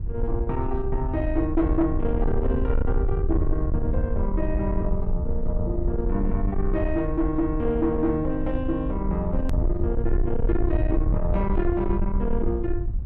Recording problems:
distortion; soft clipping, signal-to-distortion ratio 10 dB
low-frequency rumble; below 76 Hz, SNR 1 dB
click at an edit; at 9.5 s

